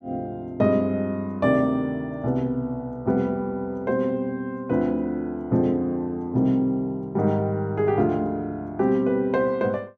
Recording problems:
none

